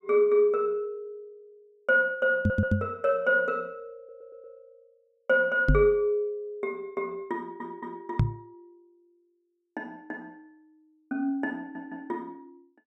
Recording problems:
stutter; 4 times, first at 2.5 s
microphone thump; at 2.5 s, at 5.5 s and at 8 s; peak +8 dB vs average level

